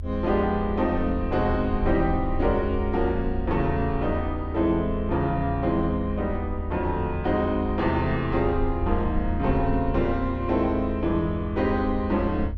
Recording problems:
low-frequency rumble; below 80 Hz, SNR 7 dB

